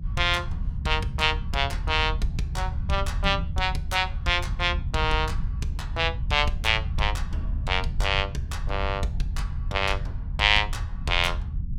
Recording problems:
rumble; below 82 Hz, SNR 5 dB

